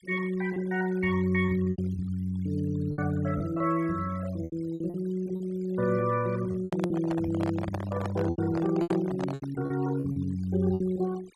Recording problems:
denoising artefacts; signal-to-artefact ratio 21 dB
lost packets; 9% of the sound replaced, filled with repeated pitch periods
microphone handling noise; from 6.5 to 9.5 s; peak -1 dB vs average level

